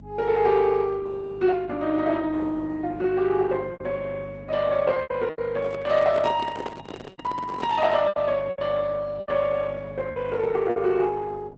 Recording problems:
codec artefacts; Opus, log-spectral distance 3 dB, nothing above 7.3 kHz
electrical hum; 50 Hz, harmonics up to 350 Hz, SNR 18 dB
packet loss; 6% of the sound replaced, filled with repeated pitch periods
handling noise; from 5.5 to 8 s; peak -4 dB vs average level

